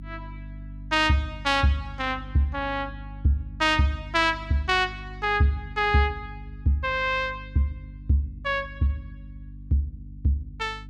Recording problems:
electrical hum; 50 Hz, harmonics up to 300 Hz, SNR 16 dB

